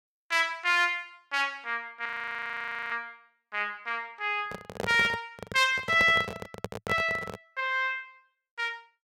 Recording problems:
audio freezing; at 2 s for 1 s
handling noise; from 4.5 to 7.5 s; peak -1 dB vs average level

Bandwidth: 16 kHz